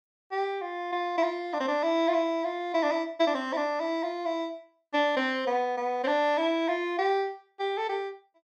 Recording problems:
none

